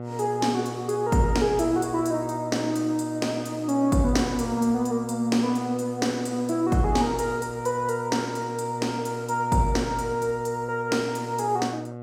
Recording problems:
hum; 60 Hz, harmonics up to 1.4 kHz, SNR 11 dB

